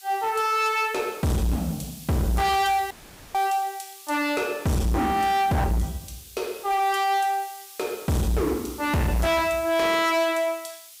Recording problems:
distorted audio; hard clipping, signal-to-distortion ratio 6 dB
hiss; slope +6 dB per octave, SNR 18 dB
audio cutting out; at 3 s

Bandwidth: 15.5 kHz